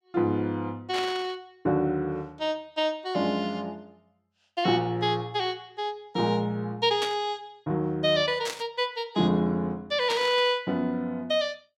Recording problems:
burst of static; 4 times, first at 1 s; peak -1 dB vs average level

